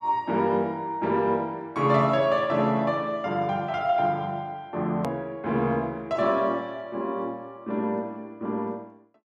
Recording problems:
click at an edit; at 5 s

